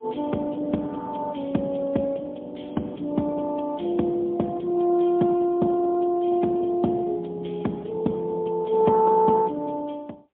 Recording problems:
phone line; 150 Hz to 3.6 kHz, AMR-NB, then MP3

